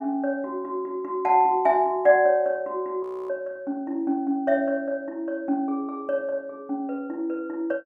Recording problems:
audio freezing; at 3 s

